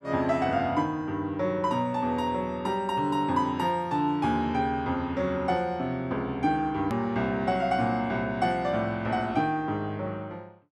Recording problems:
hard cut with a click; at 7 s

